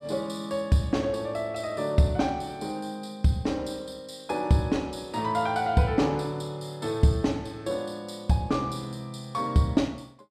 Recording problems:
none

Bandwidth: 14 kHz